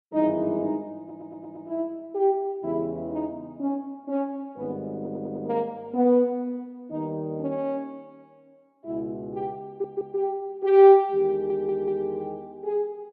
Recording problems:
audio stuttering; 4 times, first at 1 s

